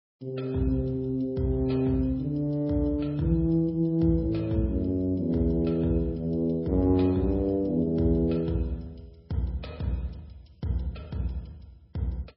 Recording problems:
codec artefacts; MP3, log-spectral distance 2 dB, nothing above 16.5 kHz

